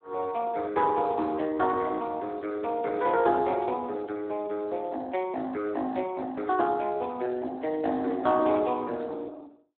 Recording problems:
telephone audio; 220 Hz to 3.7 kHz, Speex

